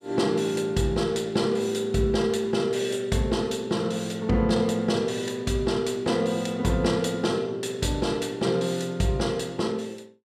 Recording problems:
none

